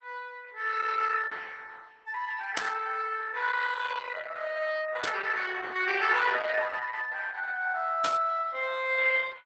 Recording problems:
lossy compression; Opus, log-spectral distance 5 dB, nothing above 8 kHz
static burst; at 2.5 s, at 5 s and at 8 s; peak -1 dB vs average level

